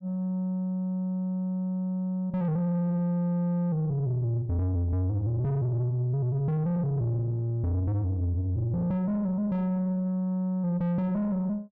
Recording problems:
distortion; soft clipping, signal-to-distortion ratio 9 dB

